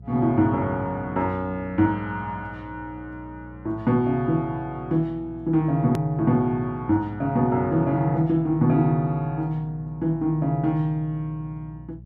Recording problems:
hum; 60 Hz, harmonics up to 360 Hz, SNR 19 dB
edit click; at 6 s

